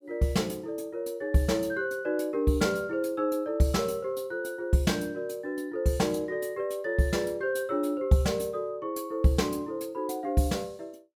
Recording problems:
none

